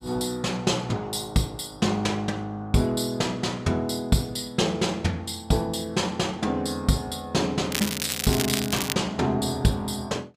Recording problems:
crackling; from 7.5 to 9 s; loose cable, SNR 2 dB

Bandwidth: 15 kHz